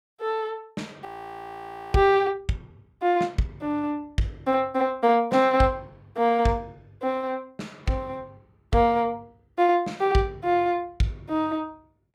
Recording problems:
audio freezing; at 1 s for 1 s

